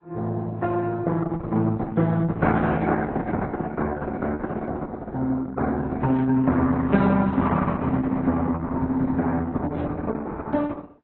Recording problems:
codec artefacts; Opus, then AAC, log-spectral distance 3 dB, nothing above 4 kHz

